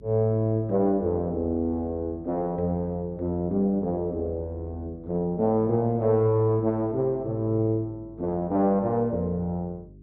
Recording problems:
hum; 50 Hz, harmonics up to 400 Hz, SNR 23 dB

